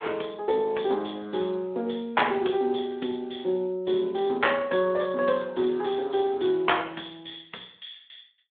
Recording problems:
telephone audio; 220 Hz to 3.5 kHz, Speex

